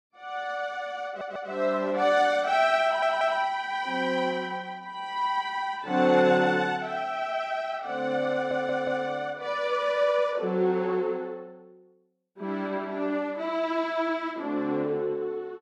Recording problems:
audio stuttering; at 1 s, at 3 s and at 8.5 s

